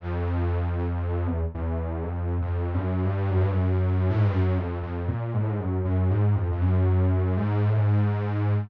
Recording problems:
none

